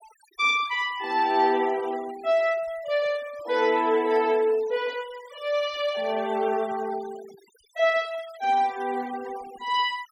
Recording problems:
noise reduction artefacts; signal-to-artefact ratio 22 dB

